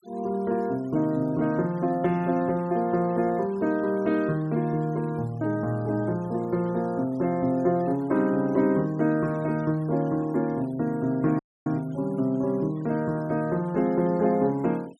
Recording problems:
denoising artefacts; signal-to-artefact ratio 28 dB
dropout; at 11 s

